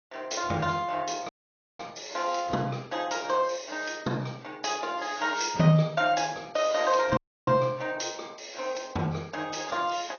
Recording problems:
treble cut off; nothing above 6.3 kHz
lossy compression; AAC, log-spectral distance 6 dB
audio cutting out; at 1.5 s for 0.5 s and at 7 s

